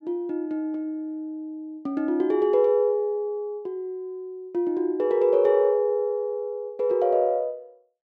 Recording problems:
none

